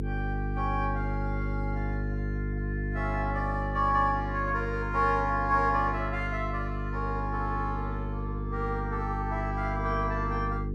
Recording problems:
electrical hum; 50 Hz, harmonics up to 450 Hz, SNR 3 dB

